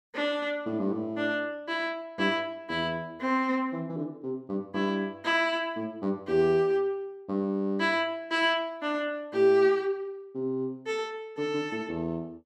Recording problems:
none

